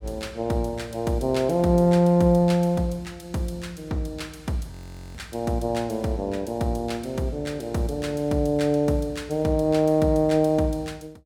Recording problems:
frozen audio; at 4.5 s

